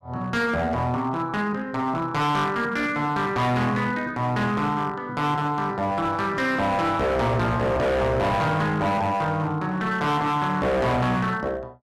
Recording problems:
distortion; hard clipping, uneven, signal-to-distortion ratio 7 dB

